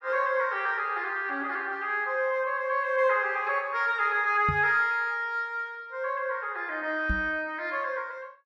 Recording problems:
microphone bump; at 4.5 s and at 7 s; peak 0 dB vs average level

